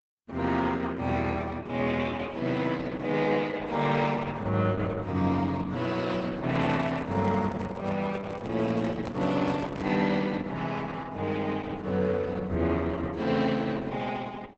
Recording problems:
lossy compression; Opus, log-spectral distance 4 dB, nothing above 7.8 kHz
microphone handling noise; from 6.5 to 10 s; peak -4 dB vs average level

